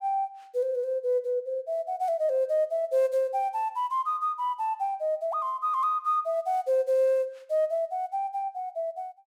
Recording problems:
none

